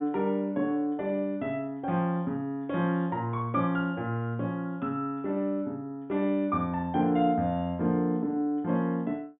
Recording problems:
treble missing; nothing above 4 kHz

